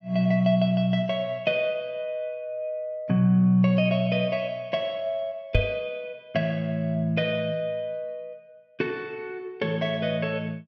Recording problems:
microphone thump; at 5.5 s; peak +6 dB vs average level

